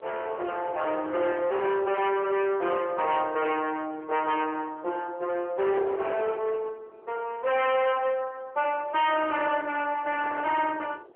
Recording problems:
phone line; 320 Hz to 3.2 kHz, AMR-NB
distorted audio; hard clipping, uneven, signal-to-distortion ratio 6 dB
wind on the microphone; below 1.2 kHz, SNR 18 dB

